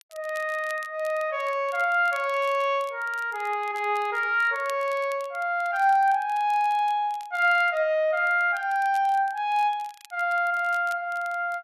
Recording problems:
crackle; vinyl, SNR 26 dB

